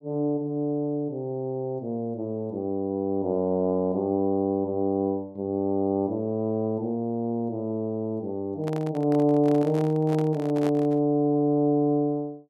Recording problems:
microphone handling noise; from 8.5 to 11 s; peak -6 dB vs average level

